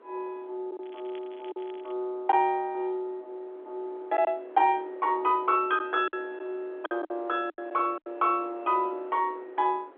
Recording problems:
telephone audio; 280 Hz to 3.8 kHz, G.711
wind on the microphone; below 770 Hz, SNR 22 dB
packet loss; 5% of the sound replaced, filled with silence
crackling; from 1 to 2 s; loose cable, SNR 27 dB

